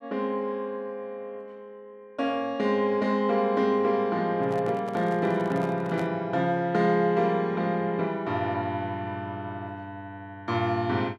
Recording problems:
microphone handling noise; from 4.5 to 6 s; peak -7 dB vs average level

